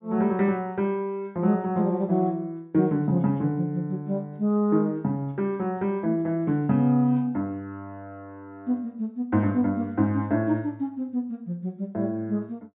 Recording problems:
low-pass filter; nothing above 4 kHz

